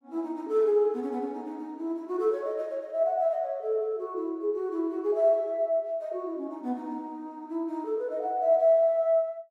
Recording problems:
none

